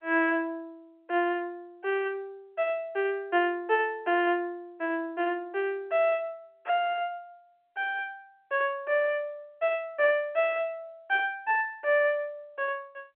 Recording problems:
telephone audio; 280 Hz to 3.1 kHz, G.711

